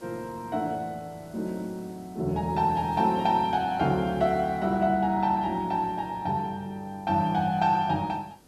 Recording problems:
background hiss; SNR 27 dB

